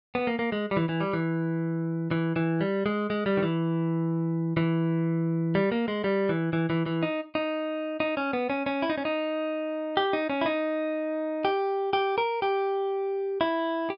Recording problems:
low-pass filter; nothing above 5.5 kHz

